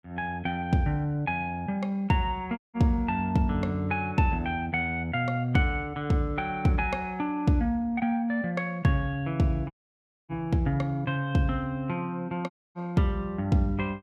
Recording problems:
dropout; at 2.5 s, at 9.5 s for 0.5 s and at 13 s

